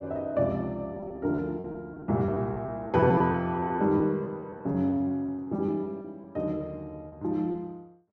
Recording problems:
lost packets; 11% of the sound replaced, filled with repeated pitch periods

